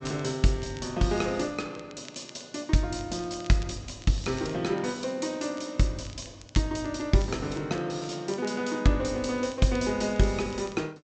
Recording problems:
treble cut off; nothing above 8 kHz
crackling; vinyl, SNR 23 dB

